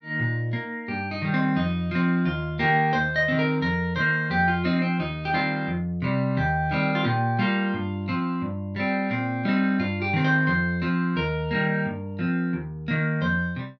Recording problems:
none

